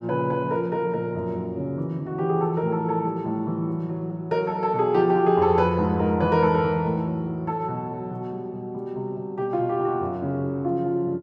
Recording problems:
none

